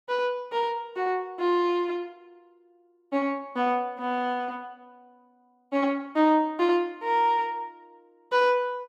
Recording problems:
none

